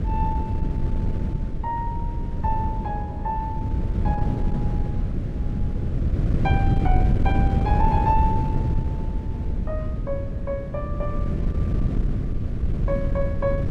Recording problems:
wind on the microphone; below 140 Hz, SNR -4 dB

